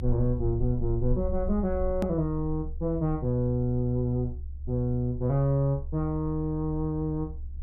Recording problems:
low-frequency rumble; below 70 Hz, strongest tone 24 Hz, SNR 9 dB
edit click; at 2 s

